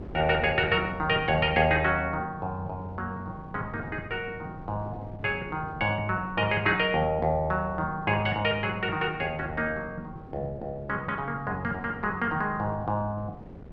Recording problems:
wind on the microphone; below 360 Hz, SNR 17 dB

